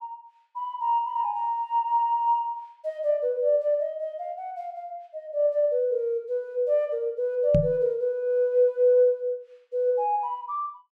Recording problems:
knock on the microphone; at 7.5 s; peak +5 dB vs average level

